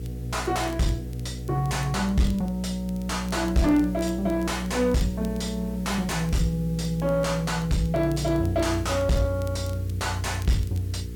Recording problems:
distortion; soft clipping, signal-to-distortion ratio 6 dB
hum; 60 Hz, harmonics up to 480 Hz, SNR 9 dB
hiss; slope +1 dB per octave, SNR 25 dB
crackle; vinyl, SNR 26 dB

